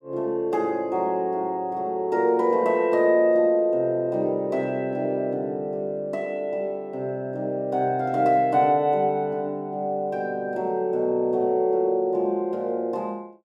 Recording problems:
none

